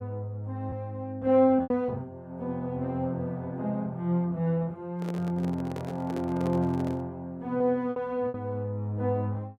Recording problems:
packet loss; 3% of the sound replaced, filled with repeated pitch periods
microphone handling noise; from 5 to 7 s; peak -5 dB vs average level

